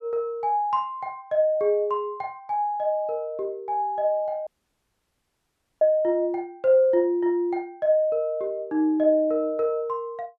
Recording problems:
audio cutting out; at 4.5 s for 1.5 s

